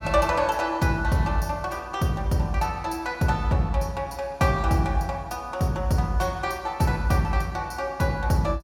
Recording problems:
none

